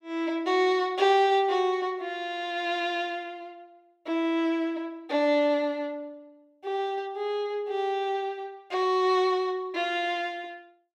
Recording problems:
none

